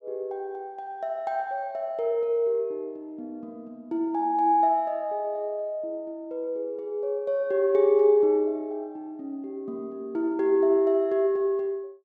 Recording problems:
none

